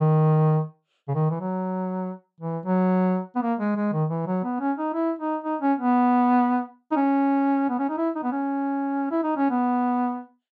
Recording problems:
none

